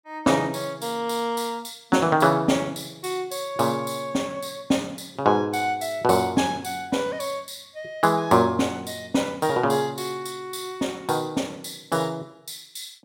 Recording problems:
none

